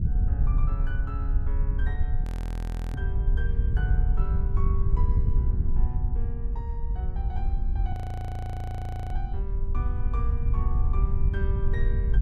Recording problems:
wind noise; below 72 Hz, SNR -13 dB
audio freezing; at 2 s for 0.5 s and at 8 s for 1 s

